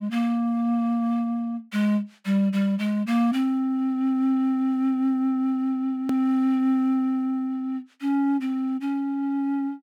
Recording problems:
hard cut with a click; at 6 s

